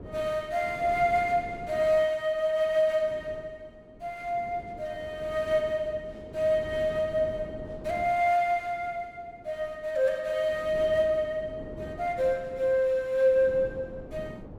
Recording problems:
wind on the microphone; below 430 Hz, SNR 18 dB

